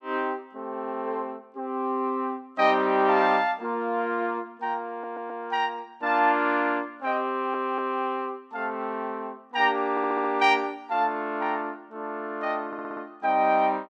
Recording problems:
audio stuttering; 4 times, first at 5 s

